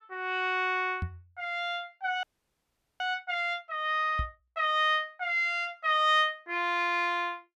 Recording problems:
microphone thump; at 1 s and at 4 s; peak -1 dB vs average level
audio freezing; at 2 s for 1 s

